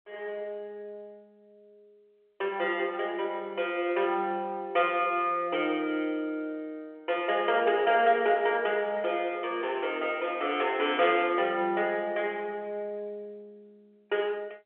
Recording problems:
telephone audio; 320 Hz to 3.5 kHz, G.711

